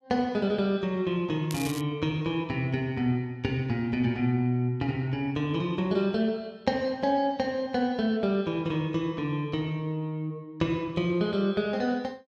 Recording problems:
crackle; at 1.5 s; loose cable, SNR 12 dB

